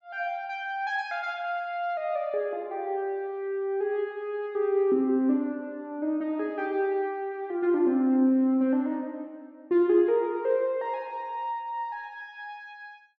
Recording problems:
treble cut off; nothing above 7.4 kHz

